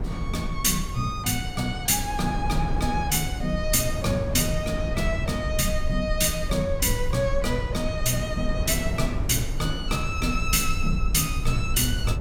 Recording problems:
rumble; below 64 Hz, SNR 7 dB
wind on the microphone; below 230 Hz, SNR 9 dB

